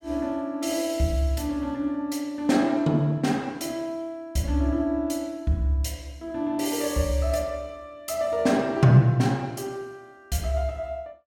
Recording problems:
none

